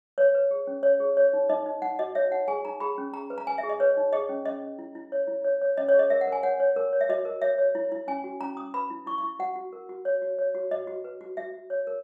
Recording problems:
none

